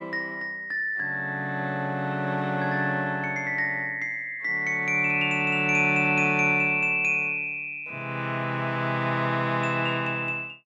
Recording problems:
none

